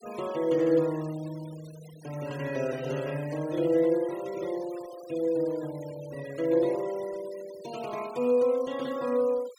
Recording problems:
denoising artefacts; signal-to-artefact ratio 20 dB

